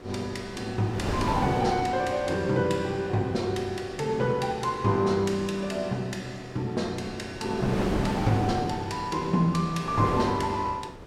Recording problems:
wind on the microphone; below 720 Hz, SNR 7 dB

